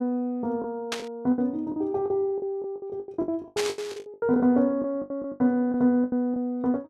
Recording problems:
packet loss; 18% of the sound replaced, filled with the last packet
static burst; at 1 s and at 3.5 s; peak +1 dB vs average level

